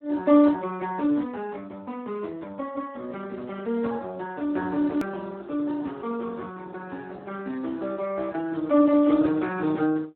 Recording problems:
phone line; 190 Hz to 2 kHz, Speex
hard cut with a click; at 5 s

